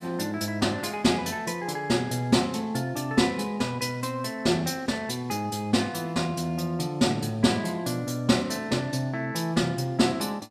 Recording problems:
none

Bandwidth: 15.5 kHz